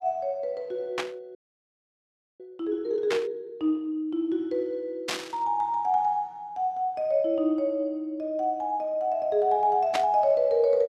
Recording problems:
burst of static; 4 times, first at 1 s; peak +1 dB vs average level
audio freezing; at 1.5 s for 1 s

